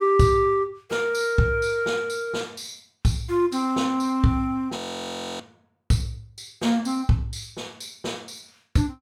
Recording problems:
audio freezing; at 5 s for 0.5 s

